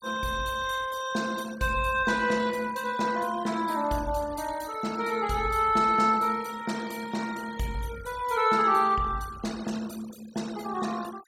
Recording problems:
noise reduction artefacts; signal-to-artefact ratio 18 dB

